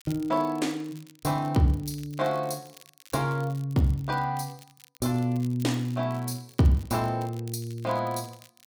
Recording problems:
crackle; vinyl, SNR 24 dB

